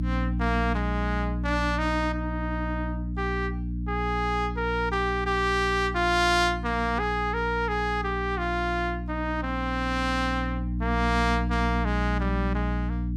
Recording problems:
hum; 60 Hz, harmonics up to 300 Hz, SNR 4 dB

